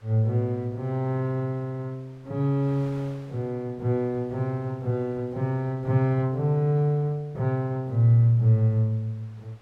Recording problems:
wind on the microphone; below 2.2 kHz, SNR 30 dB

